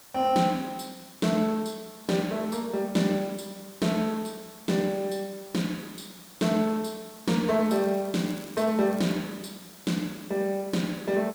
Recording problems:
background hiss; SNR 20 dB
crackling; from 7.5 to 9 s; loose cable, SNR 23 dB

